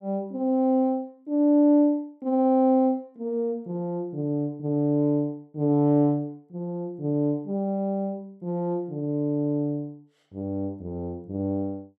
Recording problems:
none

